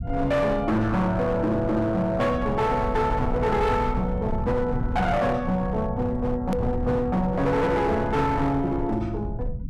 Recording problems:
distorted audio; hard clipping, signal-to-distortion ratio 10 dB
rumble; below 140 Hz, SNR 9 dB
click at an edit; at 6.5 s

